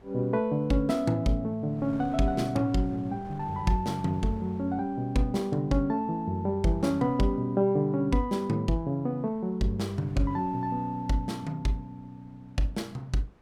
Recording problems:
wind on the microphone; below 590 Hz, SNR 24 dB

